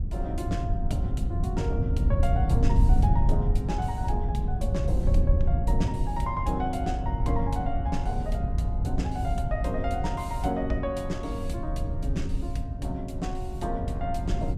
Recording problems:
rumble; below 98 Hz, SNR -3 dB

